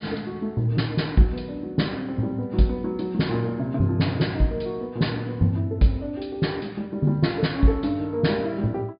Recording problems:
treble cut off; nothing above 5 kHz

